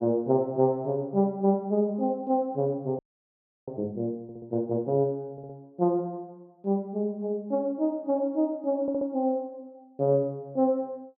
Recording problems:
frozen audio; at 3 s for 0.5 s
audio stuttering; at 4 s, at 5.5 s and at 9 s

